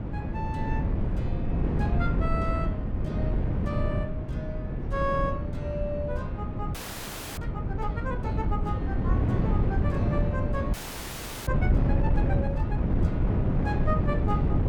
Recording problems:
wind noise; below 190 Hz, SNR -7 dB
frozen audio; at 6.5 s for 0.5 s and at 11 s for 0.5 s

